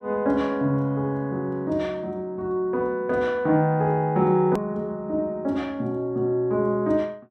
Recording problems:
edit click; at 4.5 s

